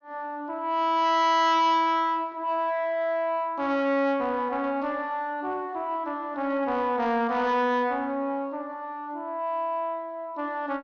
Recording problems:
treble missing; nothing above 6.6 kHz
distortion; soft clipping, signal-to-distortion ratio 10 dB

